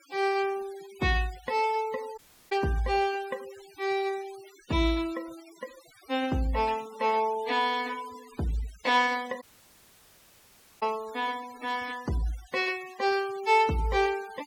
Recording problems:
noise reduction artefacts; signal-to-artefact ratio 19 dB
dropout; at 2 s and at 9.5 s for 1.5 s

